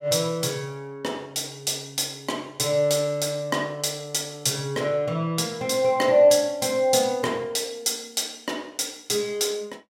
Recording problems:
none

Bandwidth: 16 kHz